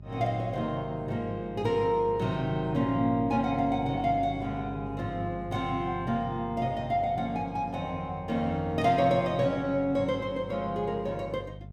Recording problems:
electrical hum; 50 Hz, harmonics up to 450 Hz, SNR 14 dB

